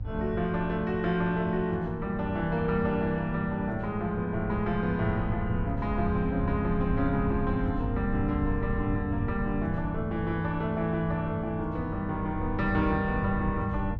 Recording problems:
electrical hum; 50 Hz, harmonics up to 800 Hz, SNR 15 dB
wind noise; below 110 Hz, SNR 7 dB

